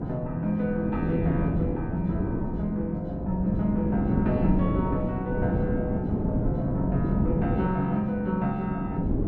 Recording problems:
wind on the microphone; below 300 Hz, SNR 1 dB

